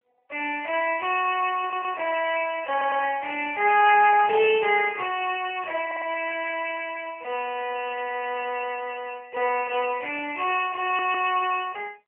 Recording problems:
phone line; 340 Hz to 3 kHz, AMR-NB
stutter; 4 times, first at 1.5 s

